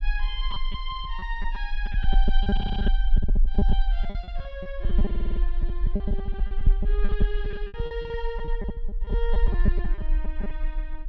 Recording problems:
rumble; below 44 Hz, strongest tone 18 Hz, SNR -8 dB
lost packets; 14% of the sound replaced, filled with repeated pitch periods
audio stuttering; at 2.5 s and at 5 s

